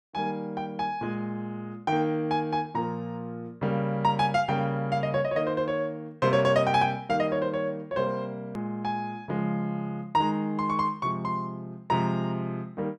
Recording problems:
edit click; at 8.5 s

